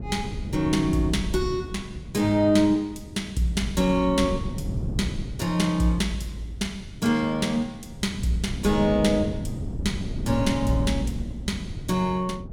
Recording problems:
wind noise; below 190 Hz, SNR 9 dB

